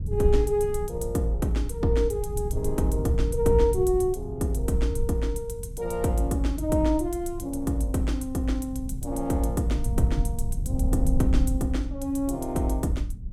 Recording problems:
rumble; below 84 Hz, SNR 6 dB

